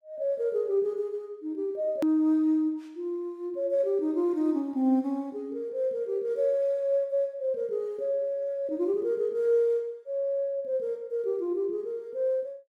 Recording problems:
click at an edit; at 2 s

